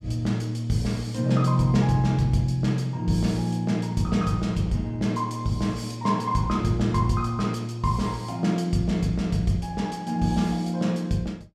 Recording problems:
none

